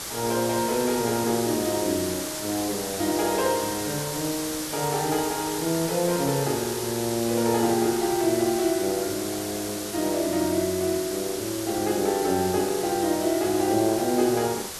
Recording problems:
hiss; slope -1 dB per octave, SNR 6 dB

